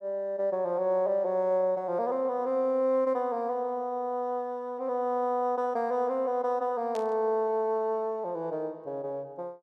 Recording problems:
burst of static; at 7 s; peak -12 dB vs average level

